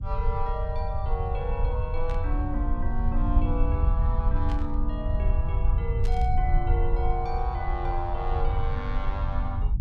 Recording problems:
low-frequency rumble; below 72 Hz, SNR -5 dB
static burst; at 2 s, at 4.5 s and at 6 s; peak -7 dB vs average level

